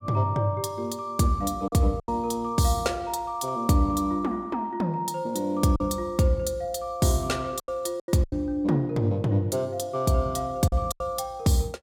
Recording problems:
packet loss; 4% of the sound replaced, filled with silence

